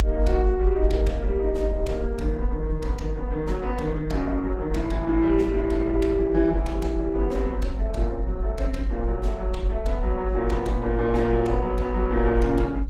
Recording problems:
codec artefacts; Opus, log-spectral distance 2 dB
hum; 60 Hz, harmonics up to 540 Hz, SNR 23 dB
low-frequency rumble; below 52 Hz, strongest tone 52 Hz, SNR 3 dB

